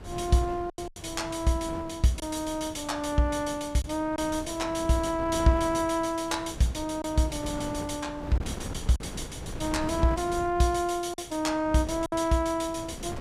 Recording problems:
wind noise; below 390 Hz, SNR 12 dB
packet loss; 3% of the sound replaced, filled with silence

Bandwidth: 15 kHz